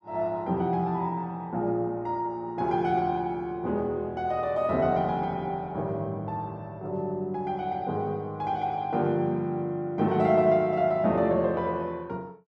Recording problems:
none

